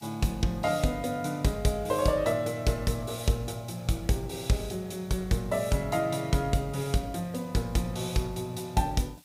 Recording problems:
hiss; SNR 27 dB

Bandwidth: 15.5 kHz